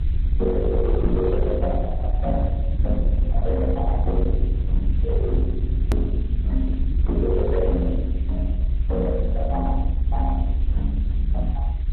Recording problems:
lossy codec; Opus, then MP2, log-spectral distance 3 dB
distorted audio; hard clipping, uneven, signal-to-distortion ratio 11 dB
hiss; SNR 27 dB
low-frequency rumble; below 70 Hz, strongest tone 38 Hz, SNR -4 dB
click at an edit; at 6 s

